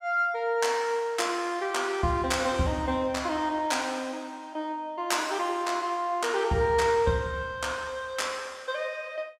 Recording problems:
none

